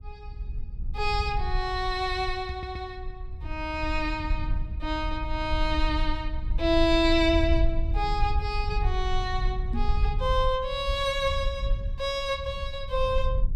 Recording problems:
rumble; below 62 Hz, SNR 4 dB
microphone bump; at 2.5 s and at 9.5 s; peak -2 dB vs average level
audio stuttering; at 2.5 s

